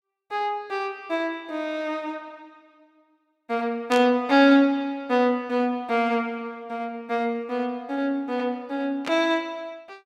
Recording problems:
burst of static; at 4 s and at 9 s; peak -4 dB vs average level

